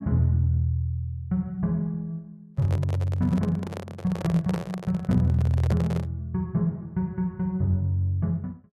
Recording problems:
handling noise; from 2.5 to 6 s; peak -3 dB vs average level

